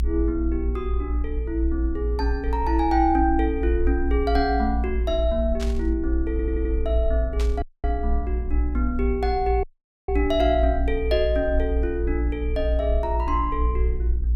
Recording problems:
hum; 60 Hz, harmonics up to 420 Hz, SNR 14 dB
low-frequency rumble; below 60 Hz, strongest tone 58 Hz, SNR 1 dB
burst of static; at 5.5 s and at 7.5 s; peak -6 dB vs average level
audio stuttering; at 6.5 s
audio cutting out; at 7.5 s and at 9.5 s

